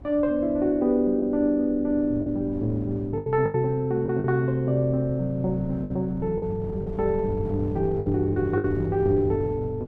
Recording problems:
wind noise; below 220 Hz, SNR 14 dB
lost packets; 5% of the sound replaced, filled with the last packet

